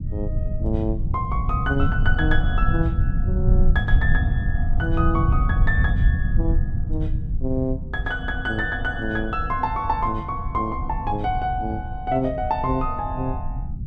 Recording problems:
rumble; below 98 Hz, SNR -1 dB

